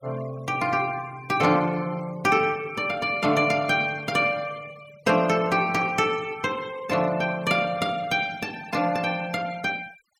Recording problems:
noise reduction artefacts; signal-to-artefact ratio 22 dB

